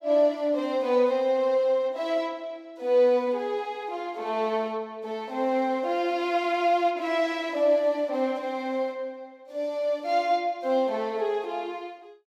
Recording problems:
none

